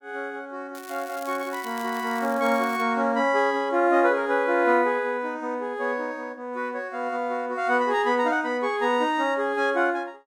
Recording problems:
crackle; from 1 to 3 s; loose cable, SNR 20 dB

